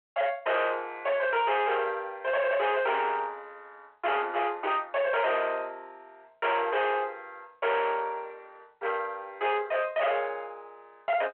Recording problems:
phone line; 370 Hz to 3.5 kHz, G.726
distortion; hard clipping, signal-to-distortion ratio 6 dB

